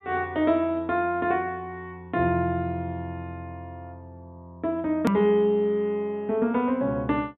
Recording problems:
treble cut off; nothing above 4 kHz
hard cut with a click; at 5 s

